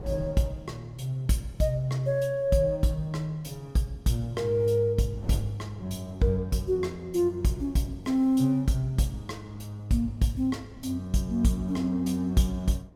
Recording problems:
wind noise; below 290 Hz, SNR 22 dB

